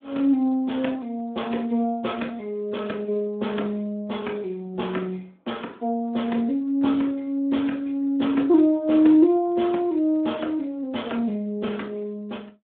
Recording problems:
telephone audio; 170 Hz to 3.5 kHz, Speex

